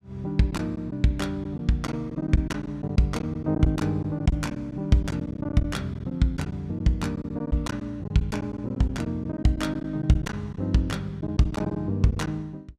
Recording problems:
packet loss; 9% of the sound replaced, filled with silence

